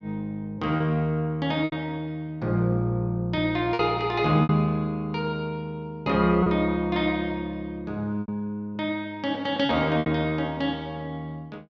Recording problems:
packet loss; 4% of the sound replaced, filled with repeated pitch periods

